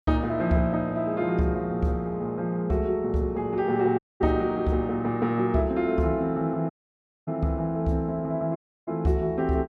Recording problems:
audio cutting out; at 4 s, at 6.5 s for 0.5 s and at 8.5 s

